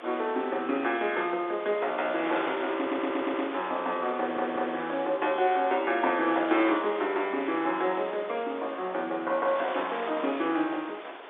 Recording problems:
telephone audio; 280 Hz to 3.7 kHz, G.711
wind on the microphone; below 2.2 kHz, SNR 11 dB
audio stuttering; at 3 s and at 4 s

